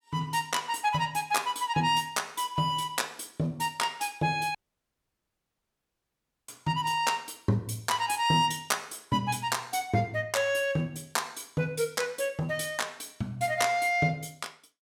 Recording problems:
audio cutting out; at 4.5 s for 2 s

